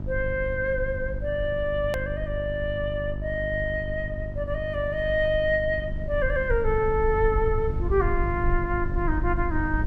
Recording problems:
mains hum; 50 Hz, harmonics up to 700 Hz, SNR 9 dB
rumble; below 66 Hz, SNR 7 dB
click at an edit; at 2 s

